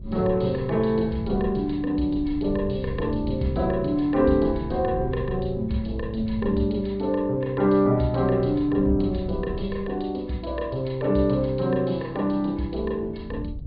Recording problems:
low-pass filter; nothing above 4.7 kHz
wind on the microphone; below 120 Hz, SNR 13 dB

